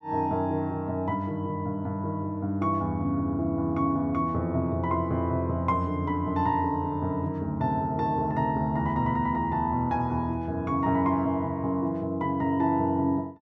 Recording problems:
none

